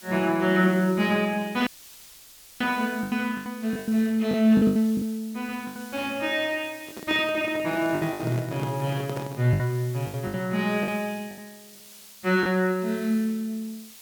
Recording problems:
hiss; slope +2 dB per octave, SNR 20 dB
packet loss; 8% of the sound replaced, filled with the last packet
audio cutting out; at 1.5 s for 1 s
handling noise; from 7 to 9.5 s; peak -5 dB vs average level

